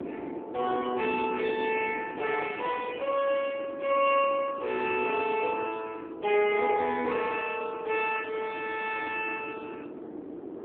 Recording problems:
telephone audio; 300 Hz to 3.5 kHz, AMR-NB
wind noise; below 440 Hz, SNR 13 dB

